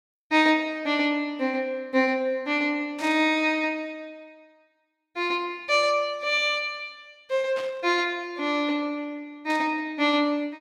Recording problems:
static burst; at 3 s, at 7.5 s and at 9.5 s; peak -10 dB vs average level

